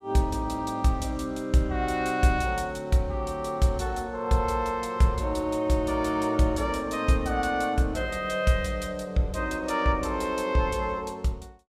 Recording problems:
none

